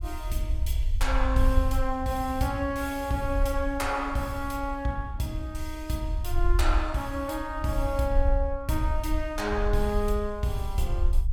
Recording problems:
low-frequency rumble; below 58 Hz, SNR 2 dB

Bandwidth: 17 kHz